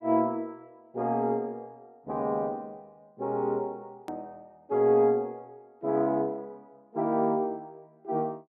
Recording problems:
edit click; at 4 s

